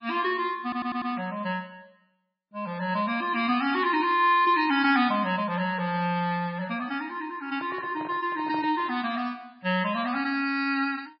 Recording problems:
codec artefacts; MP3, log-spectral distance 2 dB, nothing above 4.8 kHz
stutter; at 0.5 s
handling noise; from 7.5 to 9 s; peak -8 dB vs average level

